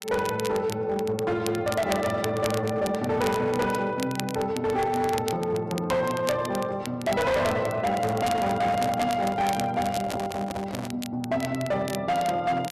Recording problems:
distortion; hard clipping, signal-to-distortion ratio 11 dB
crackling; vinyl, SNR 13 dB
handling noise; from 8 to 11 s; peak -4 dB vs average level

